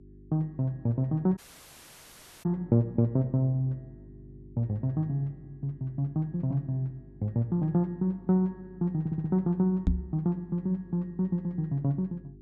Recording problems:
hum; 50 Hz, harmonics up to 400 Hz, SNR 22 dB
dropout; at 1.5 s for 1 s
stutter; at 9 s
microphone bump; at 10 s; peak +7 dB vs average level

